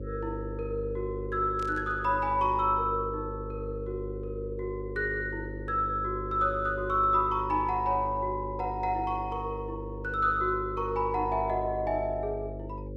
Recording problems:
hum; 50 Hz, harmonics up to 550 Hz, SNR 9 dB
burst of static; at 1.5 s; peak -13 dB vs average level

